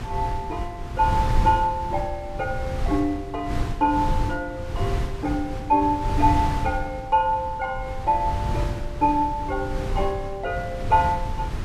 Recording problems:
wind noise; below 130 Hz, SNR 5 dB

